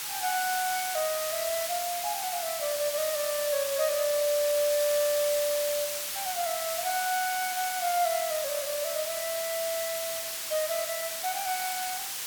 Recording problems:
hiss; slope +3 dB per octave, SNR 2 dB

